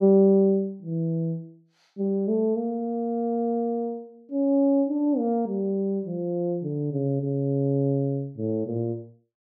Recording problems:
none

